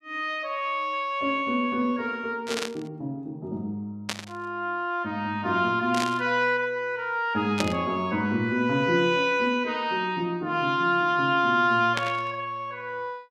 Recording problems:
burst of static; 5 times, first at 2.5 s; peak +2 dB vs average level

